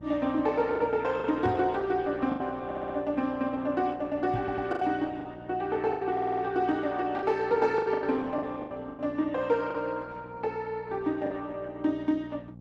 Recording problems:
codec artefacts; Opus, log-spectral distance 3 dB
hum; 60 Hz, harmonics up to 600 Hz, SNR 19 dB
lost packets; 7% of the sound replaced, filled with the last packet
knock on the microphone; at 1.5 s and at 4.5 s; peak 0 dB vs average level
stutter; at 2.5 s, at 4.5 s and at 6 s

